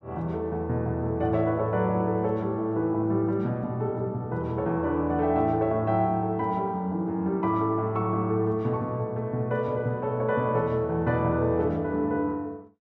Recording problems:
none

